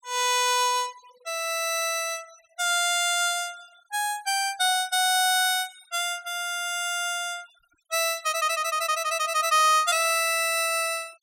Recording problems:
denoising artefacts; signal-to-artefact ratio 26 dB

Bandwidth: 16.5 kHz